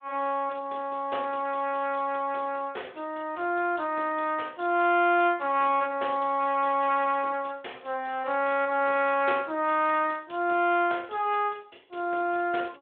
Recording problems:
phone line; 300 Hz to 3.5 kHz, Speex

